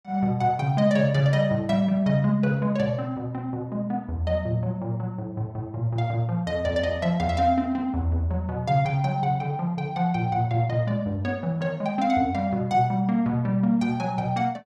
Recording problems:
none

